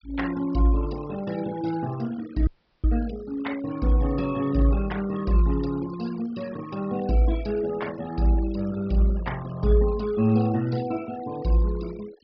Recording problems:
treble cut off; nothing above 5.5 kHz
denoising artefacts; signal-to-artefact ratio 19 dB
dropout; at 2.5 s

